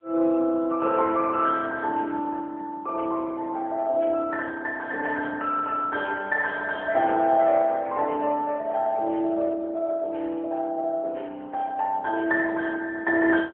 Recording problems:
phone line; 300 Hz to 3.5 kHz, AMR-NB

